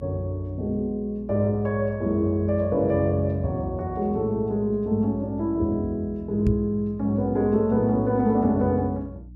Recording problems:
hum; 60 Hz, harmonics up to 300 Hz, SNR 19 dB
knock on the microphone; at 6.5 s; peak +5 dB vs average level

